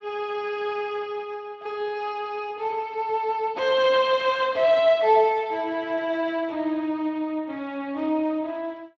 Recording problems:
lossy codec; Speex, log-spectral distance 3 dB

